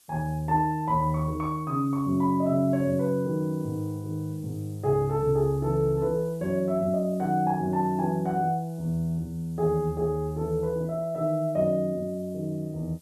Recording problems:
hiss; SNR 28 dB

